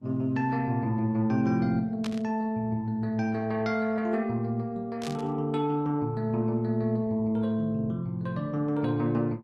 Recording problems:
lossy compression; Opus, then Vorbis, log-spectral distance 2 dB, nothing above 13.1 kHz
burst of static; at 2 s and at 5 s; peak -7 dB vs average level

